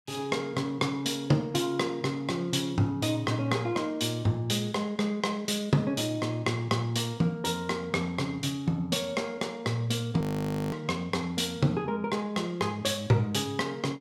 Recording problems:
frozen audio; at 10 s for 0.5 s

